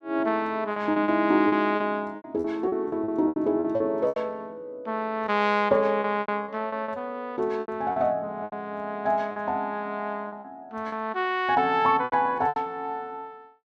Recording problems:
lost packets; 11% of the sound replaced, filled with repeated pitch periods

